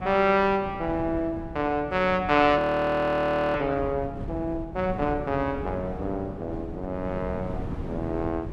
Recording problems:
wind noise; below 270 Hz, SNR 11 dB
audio freezing; at 2.5 s for 1 s

